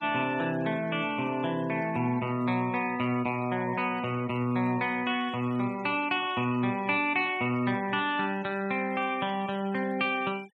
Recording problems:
denoising artefacts; signal-to-artefact ratio 23 dB

